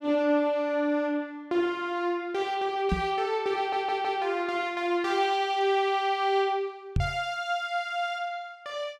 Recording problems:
microphone bump; at 3 s and at 7 s; peak +4 dB vs average level
audio stuttering; at 3.5 s

